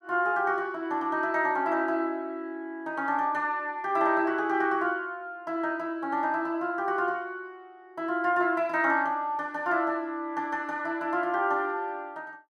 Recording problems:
none

